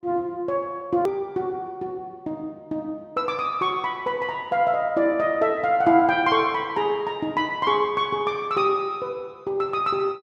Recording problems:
edit click; at 1 s

